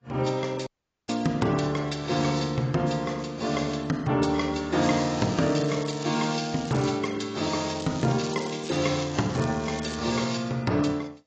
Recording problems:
lossy codec; AAC, log-spectral distance 7 dB, nothing above 7.3 kHz
dropout; at 0.5 s
crackling; from 5 to 7 s and from 7.5 to 10 s; loose cable, SNR 15 dB

